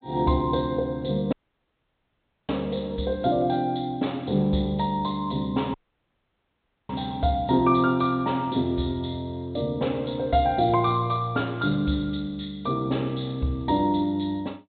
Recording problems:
treble missing; nothing above 4 kHz
dropout; at 1.5 s for 1 s and at 5.5 s for 1 s

